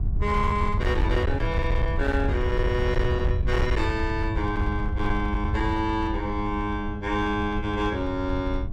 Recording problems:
distortion; hard clipping, signal-to-distortion ratio 12 dB
hum; 50 Hz, harmonics up to 1.1 kHz, SNR 13 dB
wind noise; below 92 Hz, SNR 2 dB

